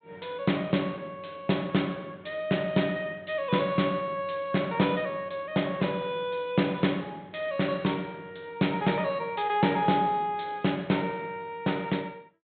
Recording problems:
treble missing; nothing above 4 kHz

